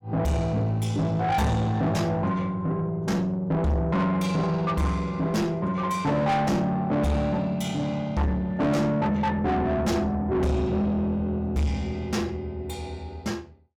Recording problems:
distortion; soft clipping, signal-to-distortion ratio 7 dB

